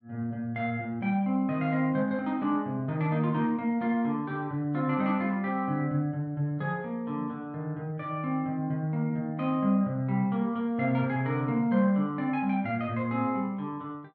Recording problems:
none

